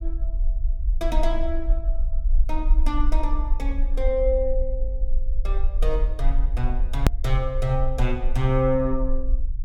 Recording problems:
rumble; below 44 Hz, strongest tone 26 Hz, SNR -1 dB
click at an edit; at 7 s

